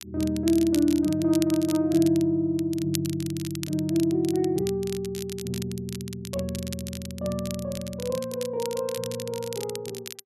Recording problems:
crackling; vinyl, SNR 13 dB

